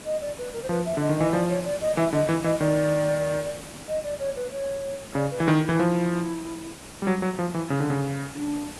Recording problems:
lossy compression; AAC, log-spectral distance 8 dB
background hiss; slope -4 dB per octave, SNR 14 dB

